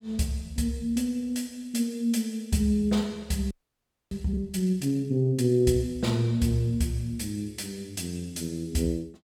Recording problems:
audio freezing; at 3.5 s for 0.5 s

